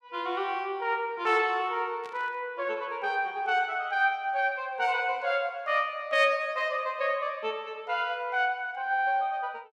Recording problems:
burst of static; at 2 s; peak -16 dB vs average level

